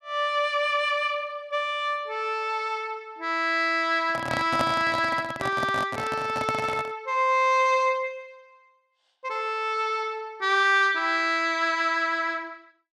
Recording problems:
handling noise; from 4 to 7 s; peak +1 dB vs average level

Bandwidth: 12.5 kHz